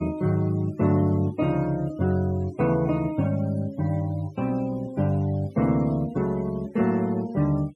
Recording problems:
noise reduction artefacts; signal-to-artefact ratio 25 dB

